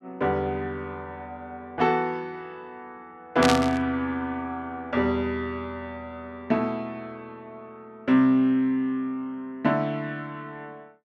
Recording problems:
burst of static; at 3.5 s; peak +5 dB vs average level

